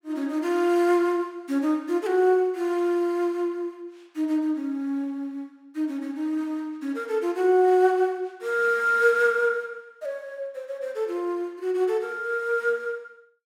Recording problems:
none

